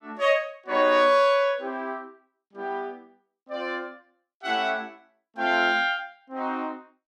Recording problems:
none

